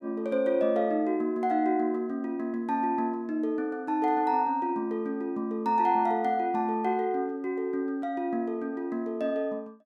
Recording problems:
none

